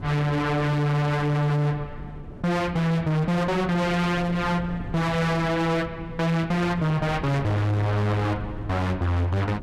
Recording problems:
distorted audio; hard clipping, signal-to-distortion ratio 7 dB
wind noise; below 280 Hz, SNR 14 dB

